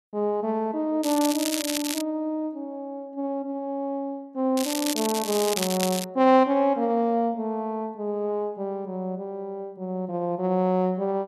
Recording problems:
crackle; at 1 s and from 4.5 to 6 s; loose cable, SNR 4 dB

